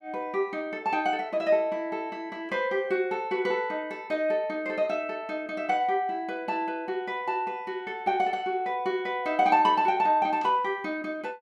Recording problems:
none

